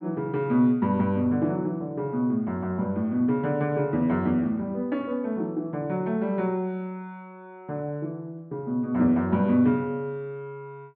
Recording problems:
treble cut off; nothing above 4.5 kHz

